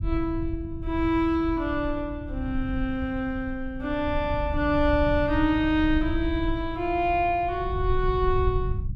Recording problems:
low-frequency rumble; below 86 Hz, SNR 7 dB

